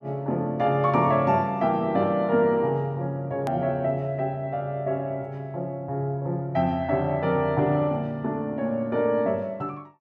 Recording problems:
hard cut with a click; at 3.5 s

